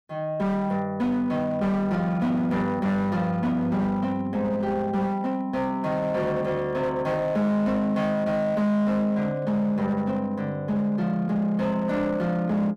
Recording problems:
distorted audio; hard clipping, signal-to-distortion ratio 11 dB

